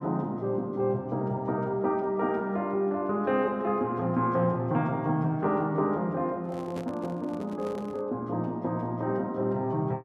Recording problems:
handling noise; from 6.5 to 8 s; peak -7 dB vs average level

